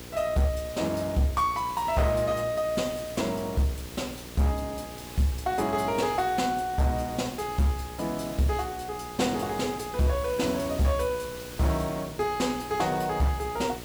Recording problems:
distortion; hard clipping, uneven, signal-to-distortion ratio 11 dB
hum; 60 Hz, harmonics up to 1.2 kHz, SNR 17 dB
background hiss; slope -2 dB per octave, SNR 14 dB

